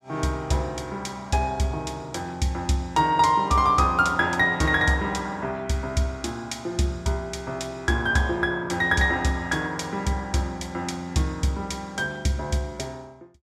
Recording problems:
none

